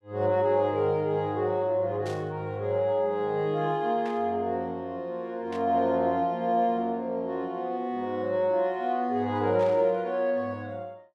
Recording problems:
burst of static; 4 times, first at 2 s; peak -13 dB vs average level

